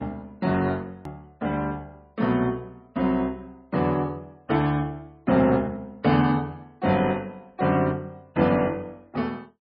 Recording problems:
codec artefacts; MP3, log-spectral distance 2 dB
hard cut with a click; at 1 s

